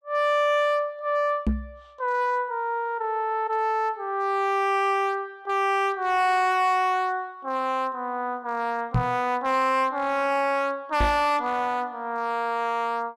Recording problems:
distortion; hard clipping, uneven, signal-to-distortion ratio 10 dB
microphone thump; at 1.5 s, at 9 s and at 11 s; peak +4 dB vs average level

